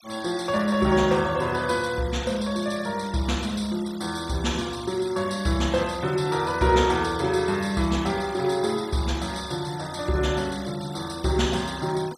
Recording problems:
denoising artefacts; signal-to-artefact ratio 17 dB

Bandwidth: 14.5 kHz